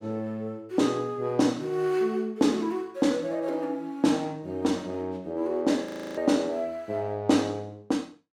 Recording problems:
frozen audio; at 6 s

